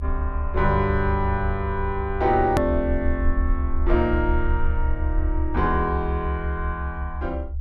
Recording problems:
rumble; below 72 Hz, SNR 2 dB
hard cut with a click; at 2.5 s

